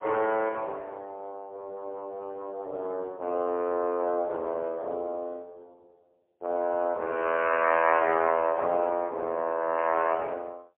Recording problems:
telephone audio; 300 Hz to 3 kHz, AMR-NB, then MP3

